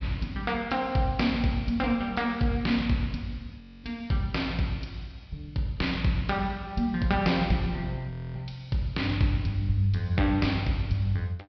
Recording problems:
treble cut off; nothing above 5.5 kHz
audio freezing; at 3.5 s and at 8 s

